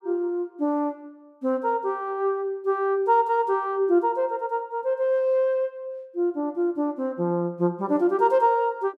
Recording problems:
none

